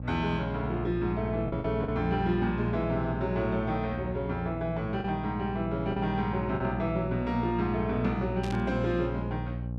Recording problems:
hum; 60 Hz, harmonics up to 840 Hz, SNR 5 dB
packet loss; 2% of the sound replaced, filled with the last packet
static burst; at 8.5 s; peak -8 dB vs average level

